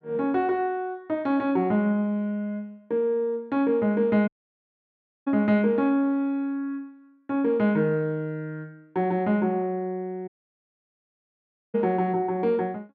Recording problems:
audio cutting out; at 4.5 s for 1 s and at 10 s for 1.5 s

